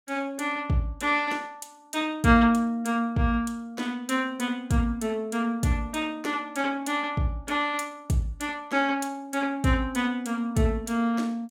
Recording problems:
none

